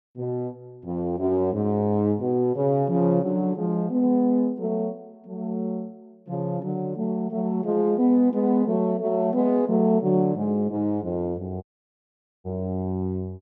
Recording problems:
audio cutting out; at 12 s for 1 s

